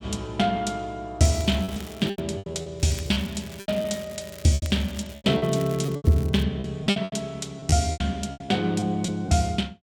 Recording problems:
lost packets; 13% of the sound replaced, filled with repeated pitch periods
crackling; from 1 to 2 s and from 3 to 6.5 s; loose cable, SNR 19 dB

